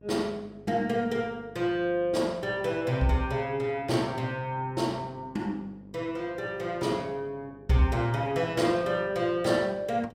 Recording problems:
hum; 50 Hz, harmonics up to 1 kHz, SNR 23 dB

